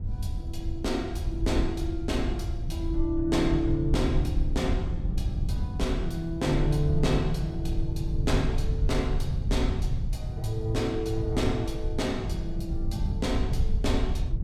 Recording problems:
rumble; below 88 Hz, SNR 1 dB

